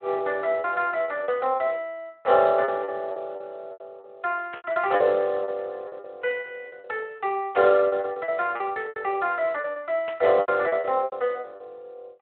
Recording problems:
telephone audio; 300 Hz to 3.4 kHz, Speex
packet loss; 13% of the sound replaced, filled with repeated pitch periods
burst of static; at 4.5 s, at 7.5 s and at 10 s; peak -10 dB vs average level

